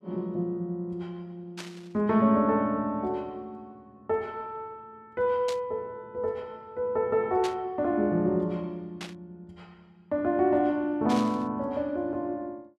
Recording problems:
static burst; 5 times, first at 1.5 s; peak -5 dB vs average level

